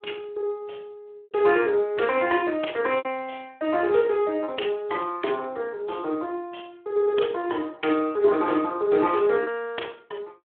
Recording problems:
phone line; 280 Hz to 3.4 kHz, Speex
lost packets; 2% of the sound replaced, filled with repeated pitch periods

